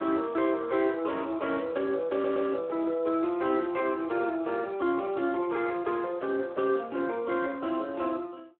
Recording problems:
telephone audio; 300 Hz to 2.7 kHz, Speex
audio stuttering; at 2 s

